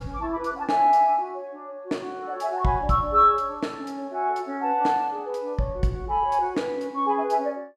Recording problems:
none

